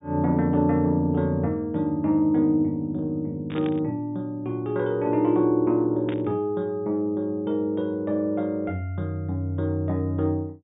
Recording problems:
low-pass filter; nothing above 3.7 kHz
burst of static; at 3.5 s and at 6 s; peak -10 dB vs average level

